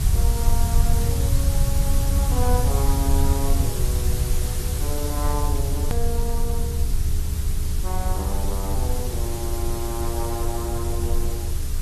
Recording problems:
lossy codec; AAC, log-spectral distance 5 dB
electrical hum; 60 Hz, harmonics up to 420 Hz, SNR 11 dB
hiss; slope -1 dB per octave, SNR 0 dB
low-frequency rumble; below 74 Hz, strongest tone 20 Hz, SNR -8 dB
edit click; at 6 s

